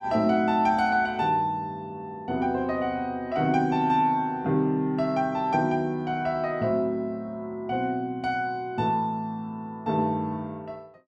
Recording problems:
none

